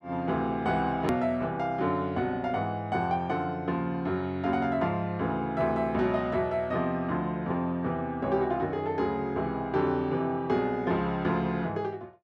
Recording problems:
click at an edit; at 1 s

